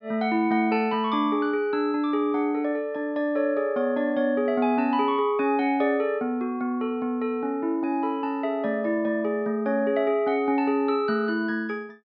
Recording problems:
treble missing; nothing above 5.5 kHz

